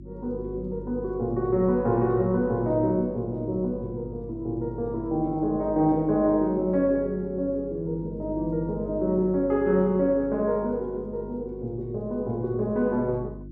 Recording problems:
mains hum; 50 Hz, harmonics up to 350 Hz, SNR 15 dB

